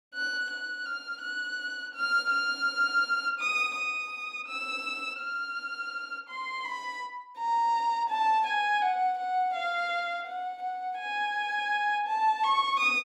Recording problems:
none

